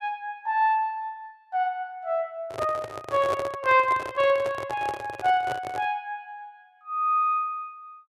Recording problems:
handling noise; from 2.5 to 6 s; peak -1 dB vs average level

